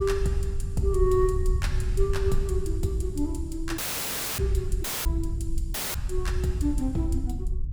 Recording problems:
low-frequency rumble; below 72 Hz, SNR 2 dB
audio cutting out; at 4 s for 0.5 s, at 5 s and at 5.5 s

